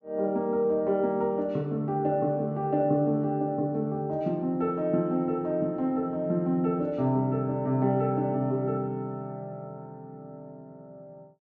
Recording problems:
low-pass filter; nothing above 8 kHz

